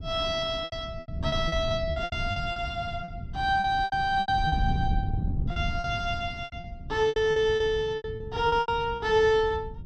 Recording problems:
wind on the microphone; below 150 Hz, SNR 8 dB
packet loss; 15% of the sound replaced, filled with repeated pitch periods

